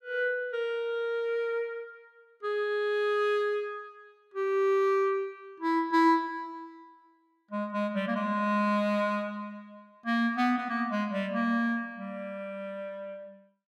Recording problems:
none

